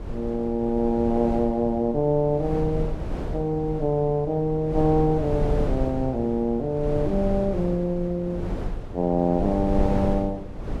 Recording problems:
wind on the microphone; below 240 Hz, SNR 8 dB

